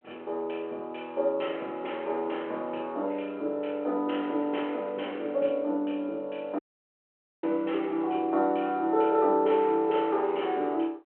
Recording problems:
telephone audio; 300 Hz to 3.2 kHz, G.726
dropout; at 6.5 s for 1 s

